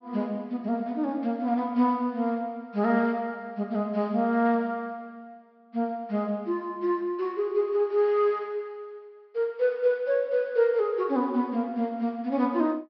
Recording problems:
treble cut off; nothing above 5.5 kHz

